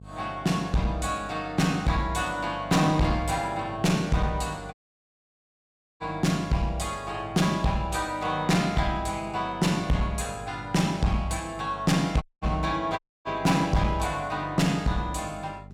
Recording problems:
distorted audio; hard clipping, uneven, signal-to-distortion ratio 10 dB
hum; 50 Hz, harmonics up to 650 Hz, SNR 18 dB
dropout; at 4.5 s for 1.5 s, at 12 s and at 13 s

